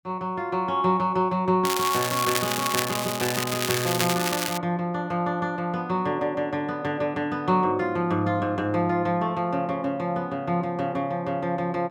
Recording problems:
crackling; from 1.5 to 4.5 s; loose cable, SNR 2 dB

